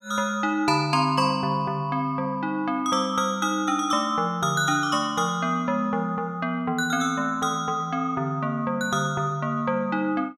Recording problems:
none

